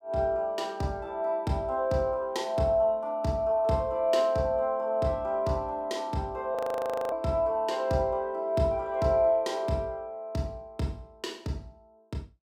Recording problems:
frozen audio; at 6.5 s for 0.5 s

